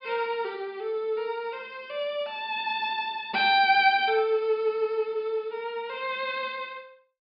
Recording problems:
low-pass filter; nothing above 5.5 kHz

